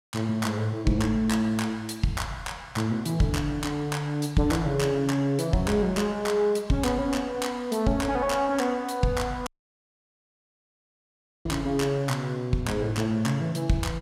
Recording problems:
dropout; at 9.5 s for 2 s

